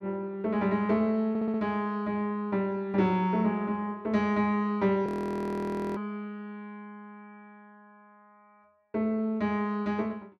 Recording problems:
stutter; at 1.5 s
audio freezing; at 5 s for 1 s

